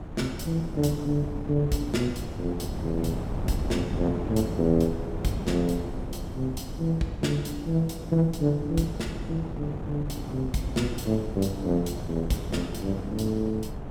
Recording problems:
wind noise; below 290 Hz, SNR 6 dB

